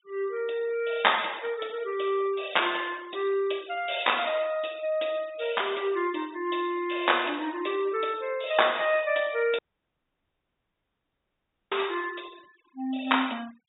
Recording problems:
treble cut off; nothing above 4 kHz
noise reduction artefacts; signal-to-artefact ratio 22 dB
audio cutting out; at 9.5 s for 2 s

